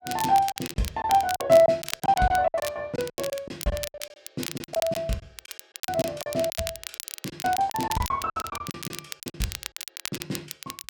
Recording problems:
crackle; vinyl, SNR 10 dB
lost packets; 17% of the sound replaced, filled with silence

